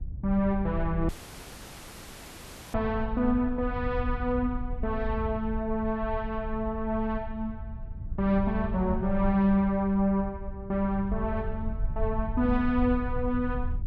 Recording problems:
rumble; below 76 Hz, SNR 8 dB
dropout; at 1 s for 1.5 s

